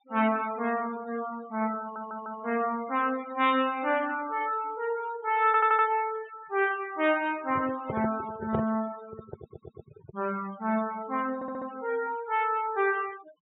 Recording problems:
treble missing; nothing above 3.8 kHz
noise reduction artefacts; signal-to-artefact ratio 17 dB
audio stuttering; 4 times, first at 2 s
microphone handling noise; from 7.5 to 10 s; peak +2 dB vs average level

